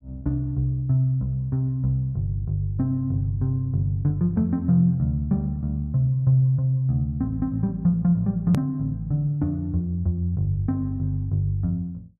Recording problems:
edit click; at 8.5 s

